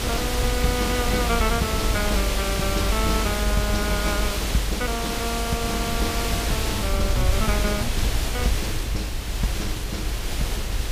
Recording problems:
hiss; slope -2 dB per octave, SNR 0 dB
rumble; below 66 Hz, strongest tone 50 Hz, SNR 1 dB

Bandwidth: 15 kHz